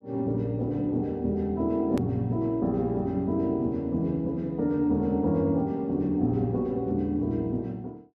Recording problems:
click at an edit; at 2 s

